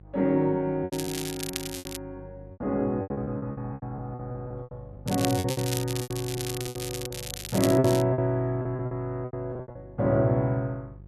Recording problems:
hum; 50 Hz, harmonics up to 550 Hz, SNR 18 dB
packet loss; 14% of the sound replaced, filled with repeated pitch periods
crackle; from 1 to 2 s and from 5 to 8 s; loose cable, SNR 7 dB

